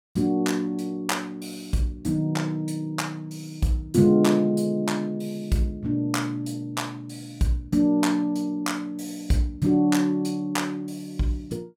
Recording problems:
none

